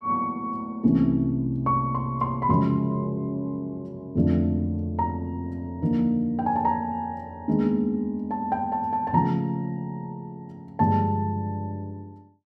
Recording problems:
none

